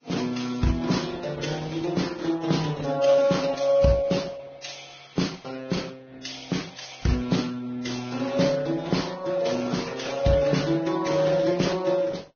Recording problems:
lossy compression; Opus, then Vorbis, log-spectral distance 5 dB, nothing above 6.5 kHz

